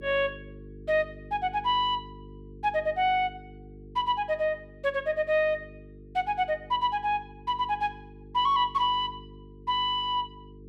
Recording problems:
hum; 50 Hz, harmonics up to 450 Hz, SNR 20 dB

